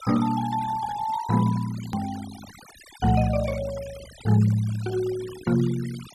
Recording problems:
denoising artefacts; signal-to-artefact ratio 18 dB
click at an edit; at 2 s

